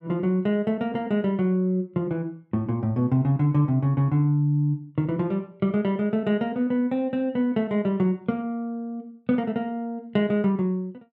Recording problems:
none

